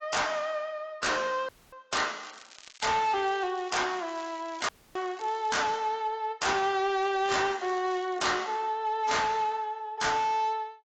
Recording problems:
codec artefacts; AAC, log-spectral distance 5 dB, nothing above 7.6 kHz
distorted audio; hard clipping, signal-to-distortion ratio 6 dB
audio cutting out; at 1.5 s and at 4.5 s
crackling; from 2 to 6 s and from 7 to 8.5 s; loose cable, SNR 22 dB

